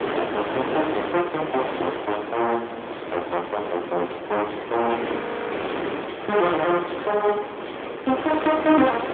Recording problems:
phone line; 260 Hz to 3.4 kHz, AMR-NB
wind noise; below 1.4 kHz, SNR 6 dB
frozen audio; at 5 s

